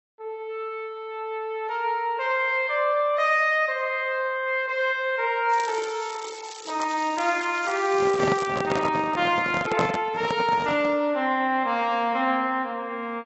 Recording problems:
lossy compression; AAC, log-spectral distance 3 dB, nothing above 7.3 kHz
crackling; from 5.5 to 8.5 s; loose cable, SNR 15 dB
microphone handling noise; from 8 to 11 s; peak +2 dB vs average level

